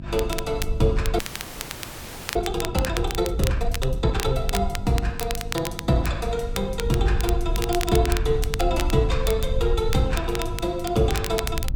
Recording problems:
hum; 50 Hz, harmonics up to 650 Hz, SNR 14 dB
wind on the microphone; below 64 Hz, SNR 6 dB
crackle; vinyl, SNR 9 dB
frozen audio; at 1 s for 1 s

